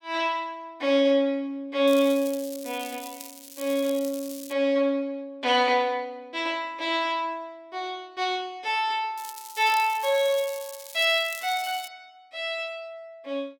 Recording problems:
crackle; from 2 to 4.5 s and from 9 to 12 s; loose cable, SNR 15 dB

